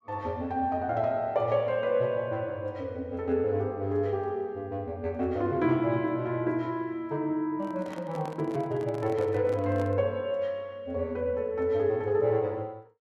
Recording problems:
handling noise; from 7.5 to 10 s; peak -9 dB vs average level

